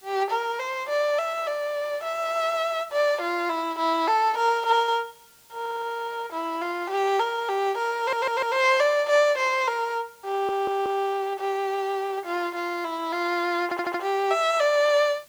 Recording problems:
hiss; slope 0 dB per octave, SNR 27 dB
audio stuttering; 4 times, first at 5.5 s

